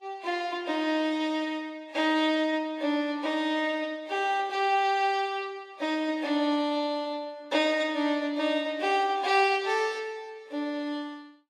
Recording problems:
lossy codec; Vorbis, log-spectral distance 2 dB, nothing above 12.3 kHz

